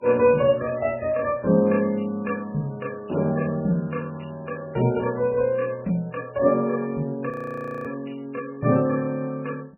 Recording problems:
lossy codec; MP3, log-spectral distance 3 dB, nothing above 2.5 kHz
frozen audio; at 7.5 s for 0.5 s

